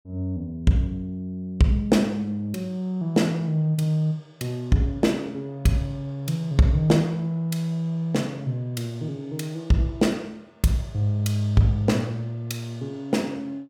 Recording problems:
none

